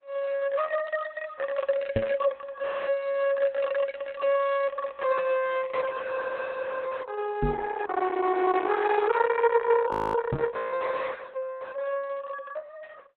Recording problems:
codec artefacts; Opus, log-spectral distance 4 dB
knock on the microphone; at 2 s, at 7.5 s and at 10 s; peak +4 dB vs average level
frozen audio; at 10 s

